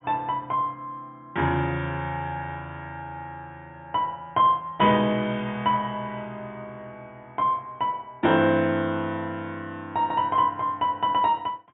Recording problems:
low-pass filter; nothing above 4 kHz

